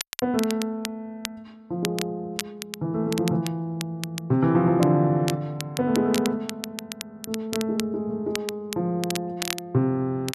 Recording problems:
crackling; vinyl, SNR 10 dB

